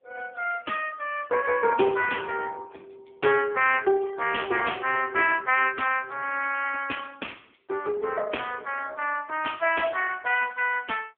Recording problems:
telephone audio; 280 Hz to 3.4 kHz, AMR-NB

